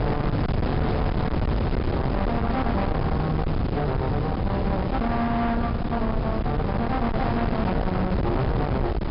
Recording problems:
treble missing; nothing above 5.5 kHz
distortion; hard clipping, uneven, signal-to-distortion ratio 7 dB
wind noise; below 400 Hz, SNR 0 dB

